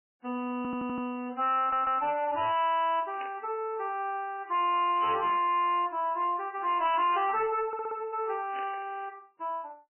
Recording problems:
lossy codec; MP3, log-spectral distance 3 dB, nothing above 2.4 kHz
distorted audio; hard clipping, uneven, signal-to-distortion ratio 9 dB
stutter; 4 times, first at 0.5 s
static burst; at 3 s, at 5 s and at 8.5 s; peak -8 dB vs average level

